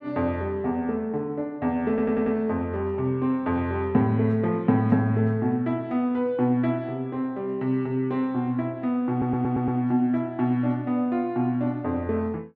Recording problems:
stutter; at 2 s and at 9 s

